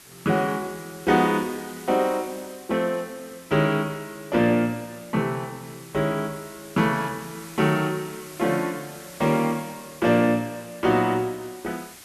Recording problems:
hiss; SNR 19 dB

